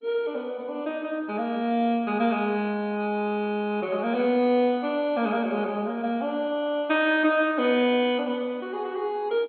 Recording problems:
lossy codec; MP2, log-spectral distance 2 dB, nothing above 3.5 kHz

